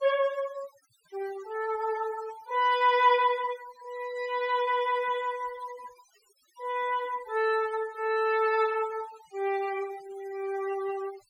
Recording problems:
noise reduction artefacts; signal-to-artefact ratio 18 dB

